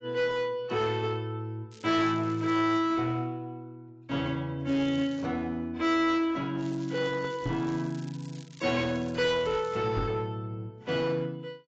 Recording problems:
codec artefacts; AAC, log-spectral distance 2 dB, nothing above 7.3 kHz
distorted audio; hard clipping, uneven, signal-to-distortion ratio 10 dB
crackle; from 1.5 to 3 s, at 4.5 s and from 6.5 to 10 s; loose cable, SNR 23 dB
microphone thump; at 7.5 s and at 10 s; peak 0 dB vs average level

